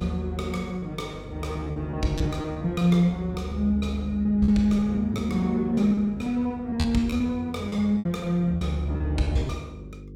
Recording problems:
hum; 50 Hz, harmonics up to 500 Hz, SNR 17 dB
lost packets; 12% of the sound replaced, filled with repeated pitch periods

